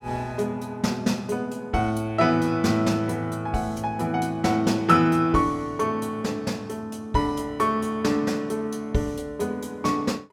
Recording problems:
none

